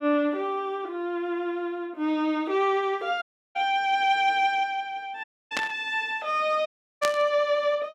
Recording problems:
audio cutting out; at 3 s, at 5 s and at 6.5 s
burst of static; at 5.5 s and at 7 s; peak +2 dB vs average level

